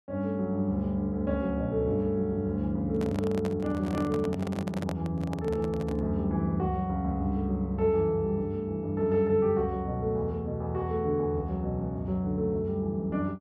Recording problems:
microphone handling noise; from 3 to 6 s; peak -3 dB vs average level

